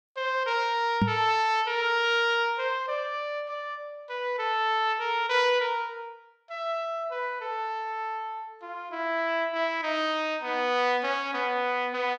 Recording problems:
knock on the microphone; at 1 s; peak +6 dB vs average level

